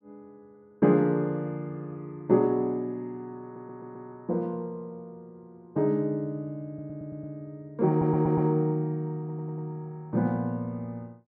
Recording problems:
stutter; 4 times, first at 3.5 s

